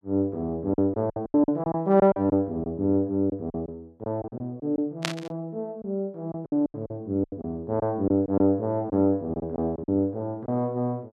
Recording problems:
lost packets; 11% of the sound replaced, filled with silence
static burst; at 5 s; peak +4 dB vs average level

